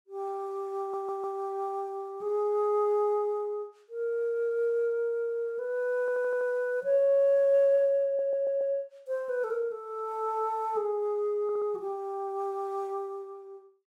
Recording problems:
audio stuttering; 4 times, first at 1 s

